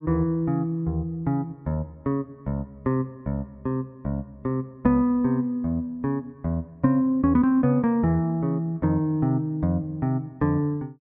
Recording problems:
none

